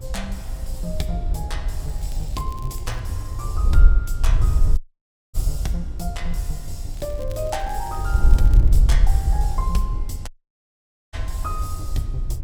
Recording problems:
hum; 50 Hz, harmonics up to 400 Hz, SNR 15 dB
low-frequency rumble; below 54 Hz, SNR 5 dB
wind noise; below 60 Hz, SNR -8 dB
crackling; from 2 to 3 s and from 7 to 9 s; loose cable, SNR 18 dB
audio cutting out; at 5 s for 0.5 s and at 10 s for 1 s

